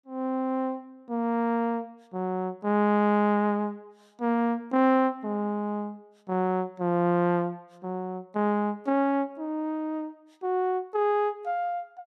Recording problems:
none

